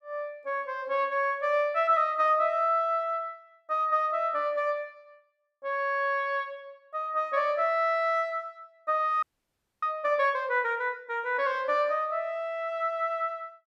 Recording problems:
audio freezing; at 9 s for 0.5 s

